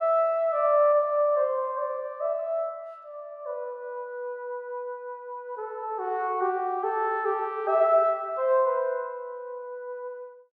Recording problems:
none

